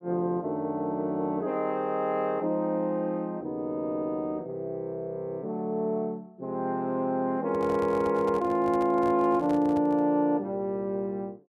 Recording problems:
microphone handling noise; from 7.5 to 10 s; peak -9 dB vs average level

